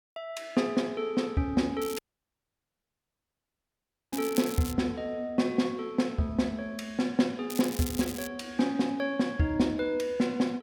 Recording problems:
crackling; from 2 to 4.5 s and at 7.5 s; loose cable, SNR 11 dB
dropout; at 2 s for 2 s

